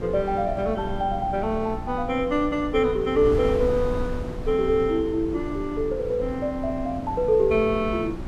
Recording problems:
mains hum; 60 Hz, harmonics up to 960 Hz, SNR 15 dB
wind on the microphone; below 180 Hz, SNR 11 dB

